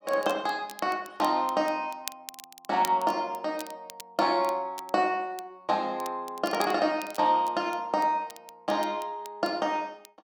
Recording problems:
crackle; vinyl, SNR 17 dB

